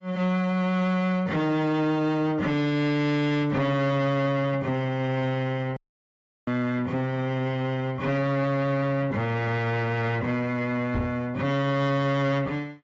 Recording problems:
codec artefacts; AAC, log-spectral distance 2 dB, nothing above 7.6 kHz
distortion; soft clipping, signal-to-distortion ratio 12 dB
dropout; at 6 s for 0.5 s
microphone bump; at 11 s; peak 0 dB vs average level

